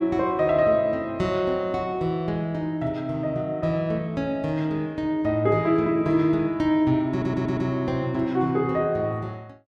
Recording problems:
audio stuttering; at 7 s

